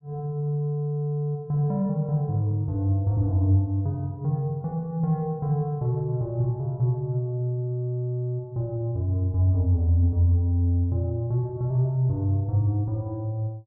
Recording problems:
none

